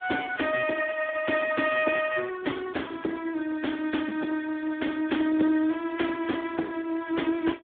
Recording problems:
telephone audio; 240 Hz to 3.6 kHz, Speex

